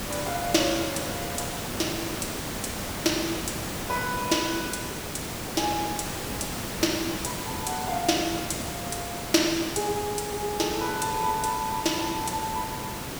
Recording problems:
mains hum; 60 Hz, harmonics up to 720 Hz, SNR 25 dB
hiss; slope -4 dB per octave, SNR 3 dB

